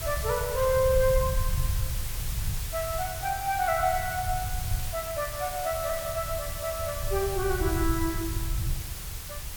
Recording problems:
hiss; slope 0 dB per octave, SNR 7 dB
rumble; below 98 Hz, SNR 6 dB

